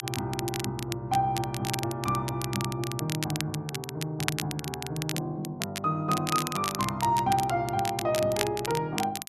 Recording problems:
crackle; vinyl, SNR 6 dB

